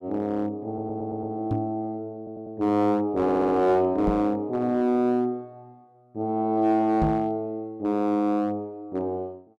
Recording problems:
distorted audio; hard clipping, uneven, signal-to-distortion ratio 11 dB
stutter; at 0.5 s, at 2 s and at 3 s
microphone bump; at 1.5 s, at 4 s and at 7 s; peak +2 dB vs average level

